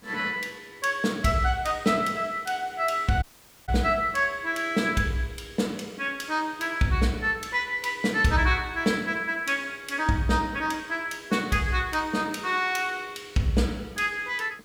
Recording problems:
hiss; slope -3 dB per octave, SNR 28 dB
dropout; at 3 s

